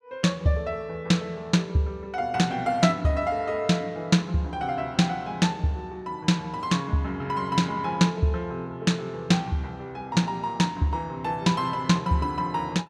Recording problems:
none

